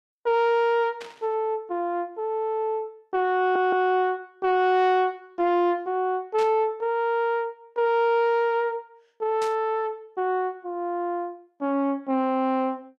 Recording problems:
distorted audio; soft clipping, signal-to-distortion ratio 12 dB
static burst; at 1 s, at 6.5 s and at 9.5 s; peak -9 dB vs average level
audio stuttering; at 3.5 s

